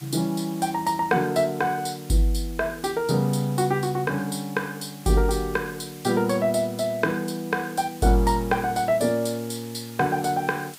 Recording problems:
background hiss; slope +1 dB per octave, SNR 19 dB

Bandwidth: 15.5 kHz